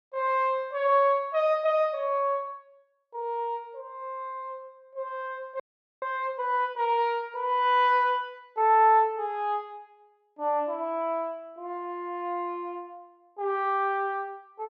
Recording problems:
audio freezing; at 5.5 s

